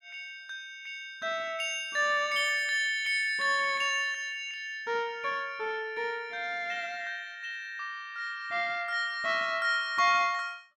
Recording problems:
none

